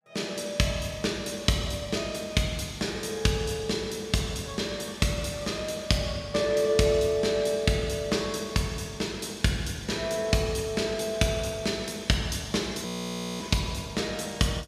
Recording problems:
frozen audio; at 13 s for 0.5 s

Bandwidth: 14.5 kHz